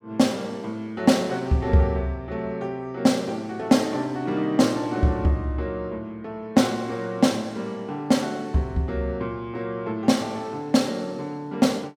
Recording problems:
none

